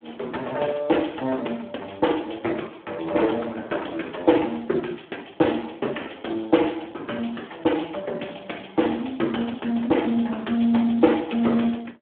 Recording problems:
telephone audio; 260 Hz to 3.3 kHz, Speex

